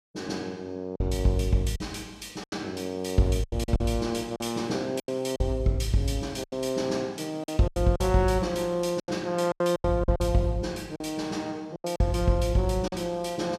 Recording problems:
packet loss; 9% of the sound replaced, filled with silence

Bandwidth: 15 kHz